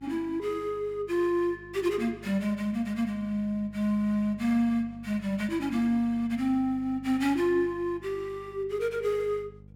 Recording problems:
hum; 50 Hz, harmonics up to 550 Hz, SNR 21 dB

